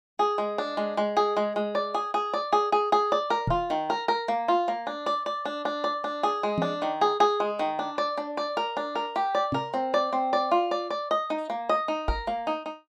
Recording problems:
knock on the microphone; 4 times, first at 3.5 s; peak +2 dB vs average level

